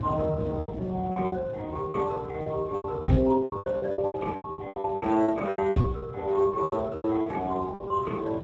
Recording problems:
codec artefacts; MP3, then Speex, log-spectral distance 3 dB, nothing above 7.3 kHz
wind noise; below 290 Hz, SNR 13 dB
packet loss; 20% of the sound replaced, filled with repeated pitch periods

